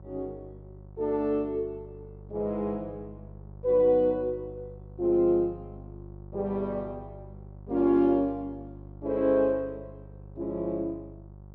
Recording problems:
hum; 50 Hz, harmonics up to 950 Hz, SNR 19 dB

